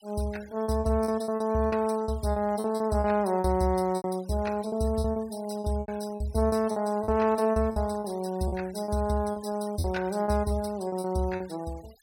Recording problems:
noise reduction artefacts; signal-to-artefact ratio 23 dB
lost packets; 12% of the sound replaced, filled with repeated pitch periods

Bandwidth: 16.5 kHz